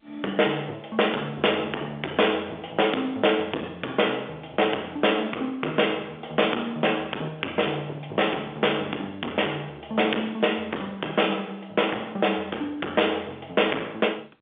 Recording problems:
telephone audio; 260 Hz to 3.6 kHz, G.711
distorted audio; hard clipping, uneven, signal-to-distortion ratio 11 dB

